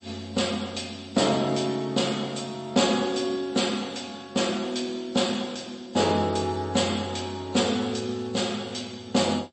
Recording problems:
codec artefacts; MP3, log-spectral distance 4 dB, nothing above 8.2 kHz

